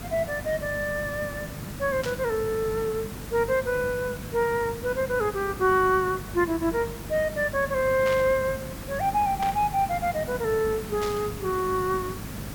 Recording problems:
electrical hum; 50 Hz, harmonics up to 600 Hz, SNR 17 dB
hiss; slope -4 dB per octave, SNR 11 dB
burst of static; 4 times, first at 2 s; peak -5 dB vs average level

